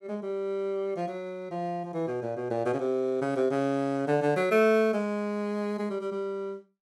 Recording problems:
none

